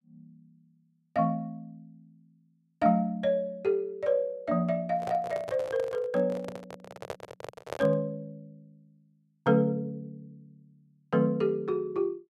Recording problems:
handling noise; from 5 to 8 s; peak -3 dB vs average level

